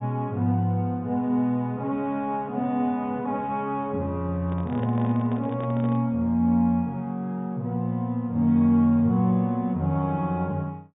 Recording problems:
treble missing; nothing above 3.7 kHz
handling noise; from 4.5 to 6 s; peak -8 dB vs average level

